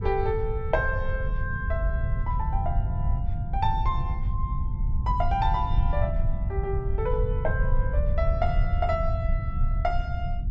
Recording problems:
treble cut off; nothing above 8 kHz
low-frequency rumble; below 90 Hz, SNR -3 dB

